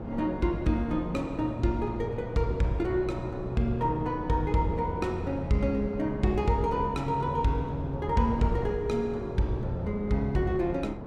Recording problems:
wind on the microphone; below 410 Hz, SNR 10 dB

